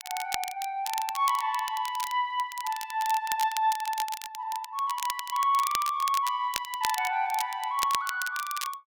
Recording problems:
crackle; vinyl, SNR 8 dB

